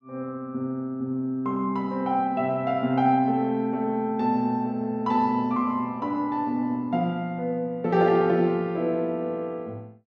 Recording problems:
none

